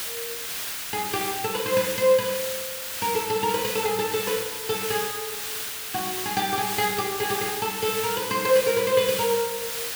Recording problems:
background hiss; SNR 4 dB

